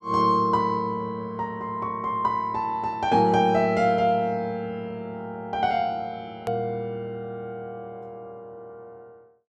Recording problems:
edit click; at 6.5 s

